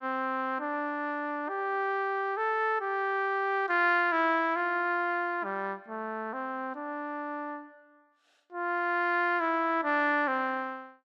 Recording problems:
none

